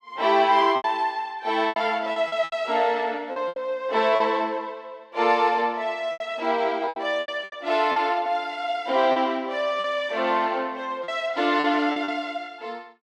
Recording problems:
lost packets; 8% of the sound replaced, filled with repeated pitch periods

